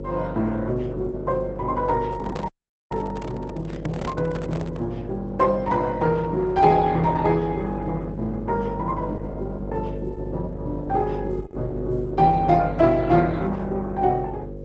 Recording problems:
lossy compression; Opus, log-spectral distance 2 dB, nothing above 7.8 kHz
electrical hum; 50 Hz, harmonics up to 600 Hz, SNR 10 dB
microphone handling noise; from 2 to 5 s; peak -3 dB vs average level
audio cutting out; at 2.5 s

